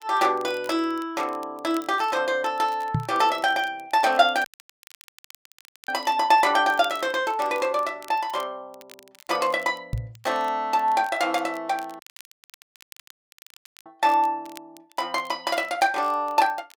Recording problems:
crackling; vinyl, SNR 26 dB
microphone thump; at 3 s and at 10 s; peak +2 dB vs average level
audio cutting out; at 4.5 s for 1.5 s and at 12 s for 2 s

